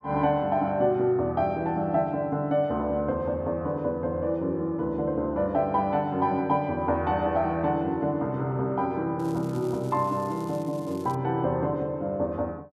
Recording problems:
crackle; from 9 to 11 s; loose cable, SNR 25 dB

